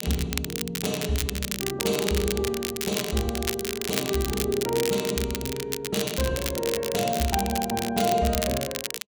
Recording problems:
crackle; vinyl, SNR 3 dB

